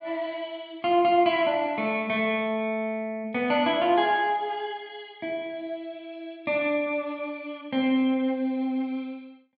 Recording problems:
treble cut off; nothing above 5.5 kHz

